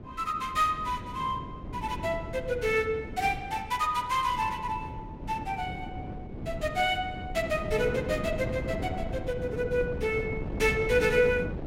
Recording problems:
wind on the microphone; below 330 Hz, SNR 9 dB

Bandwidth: 16 kHz